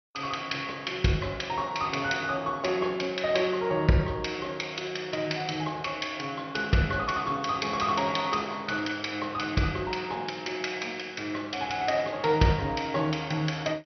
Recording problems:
lossy compression; MP2, log-spectral distance 4 dB, nothing above 6 kHz

